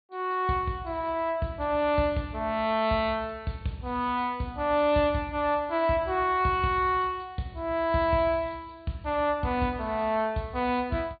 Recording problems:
treble cut off; nothing above 4.6 kHz

